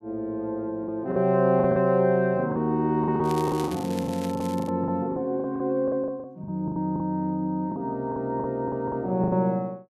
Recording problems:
packet loss; 13% of the sound replaced, filled with the last packet
crackle; from 3 to 4.5 s; loose cable, SNR 17 dB

